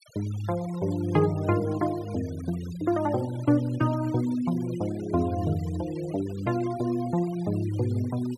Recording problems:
denoising artefacts; signal-to-artefact ratio 19 dB

